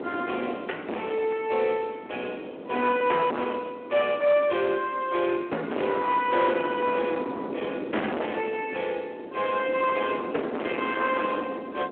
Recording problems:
telephone audio; 240 Hz to 3.3 kHz, Speex
distortion; hard clipping, signal-to-distortion ratio 6 dB
wind noise; below 690 Hz, SNR 10 dB

